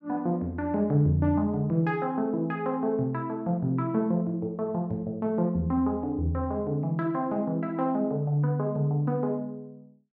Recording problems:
none

